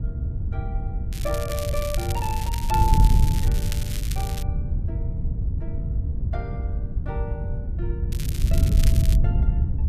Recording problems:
wind noise; below 98 Hz, SNR -8 dB
crackle; from 1 to 4.5 s and from 8 to 9 s; loose cable, SNR 4 dB

